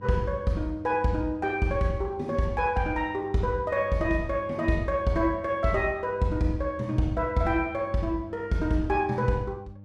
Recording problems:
electrical hum; 50 Hz, harmonics up to 800 Hz, SNR 20 dB

